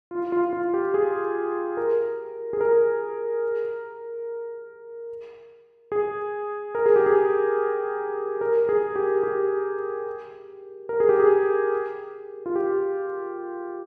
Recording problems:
none

